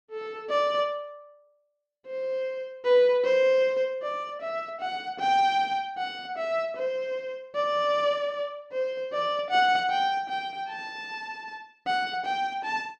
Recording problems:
none

